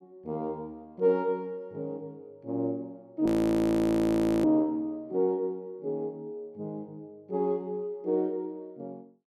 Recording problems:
frozen audio; at 3.5 s for 1 s

